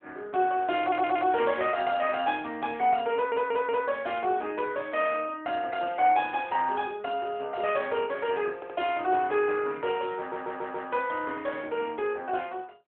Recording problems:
phone line; 280 Hz to 3.5 kHz, AMR-NB
stutter; 4 times, first at 1 s

